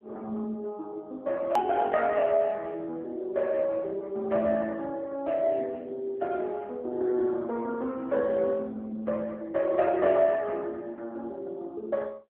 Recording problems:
phone line; 240 Hz to 3 kHz, AMR-NB
edit click; at 1.5 s

